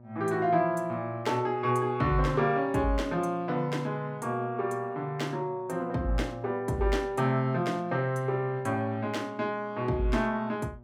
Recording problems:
mains hum; 60 Hz, harmonics up to 1.2 kHz, SNR 23 dB

